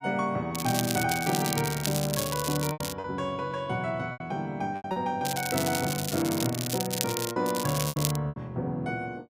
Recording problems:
lost packets; 6% of the sound replaced, filled with repeated pitch periods
crackle; from 0.5 to 3 s, from 5 to 7.5 s and at 7.5 s; loose cable, SNR 3 dB

